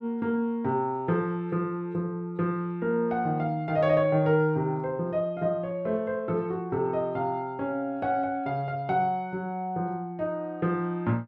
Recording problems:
none

